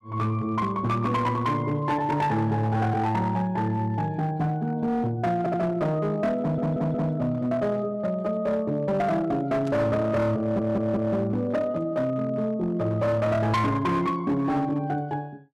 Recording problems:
distortion; hard clipping, signal-to-distortion ratio 11 dB
audio stuttering; at 5.5 s, at 6.5 s and at 10 s
burst of static; at 9.5 s; peak -16 dB vs average level

